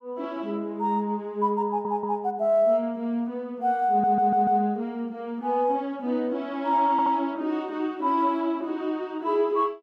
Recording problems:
stutter; at 1.5 s, at 4 s and at 7 s

